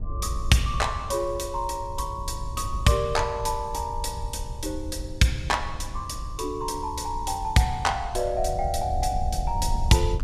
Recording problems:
wind noise; below 74 Hz, SNR 8 dB

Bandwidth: 15 kHz